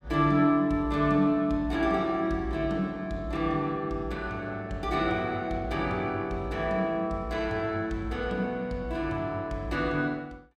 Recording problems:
none

